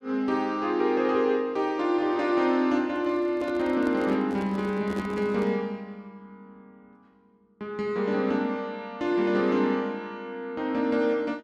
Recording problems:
microphone handling noise; from 3 to 5.5 s; peak -5 dB vs average level

